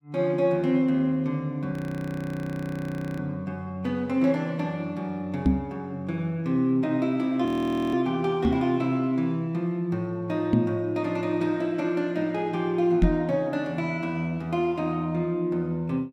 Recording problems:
audio freezing; at 1.5 s for 1.5 s and at 7.5 s
microphone thump; 4 times, first at 5.5 s; peak +9 dB vs average level

